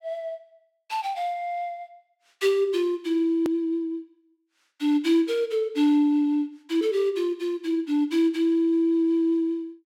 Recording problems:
edit click; at 3.5 s

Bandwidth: 16 kHz